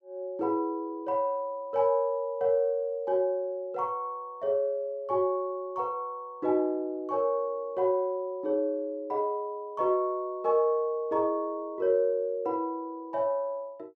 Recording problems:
none

